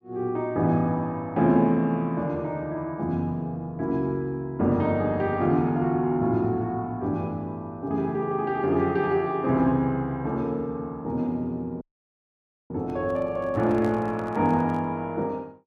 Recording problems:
audio cutting out; at 12 s for 1 s
microphone handling noise; from 13 to 15 s; peak -10 dB vs average level

